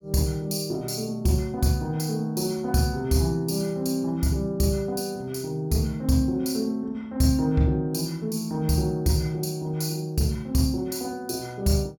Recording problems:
none

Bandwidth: 18 kHz